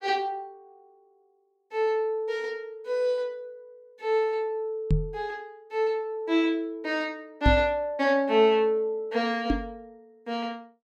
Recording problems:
microphone thump; at 5 s, at 7.5 s and at 9.5 s; peak +8 dB vs average level

